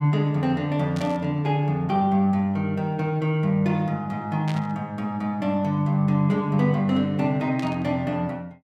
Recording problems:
static burst; at 1 s, at 4.5 s and at 7.5 s; peak -9 dB vs average level

